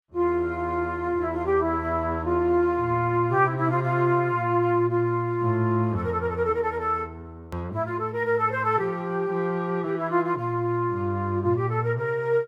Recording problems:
hard cut with a click; at 7.5 s

